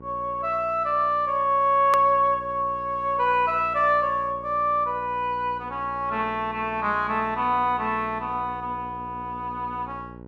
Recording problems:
mains hum; 60 Hz, harmonics up to 1.1 kHz, SNR 19 dB
click at an edit; at 2 s

